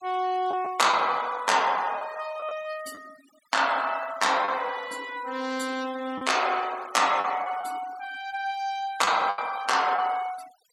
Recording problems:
denoising artefacts; signal-to-artefact ratio 20 dB
packet loss; 4% of the sound replaced, filled with the last packet

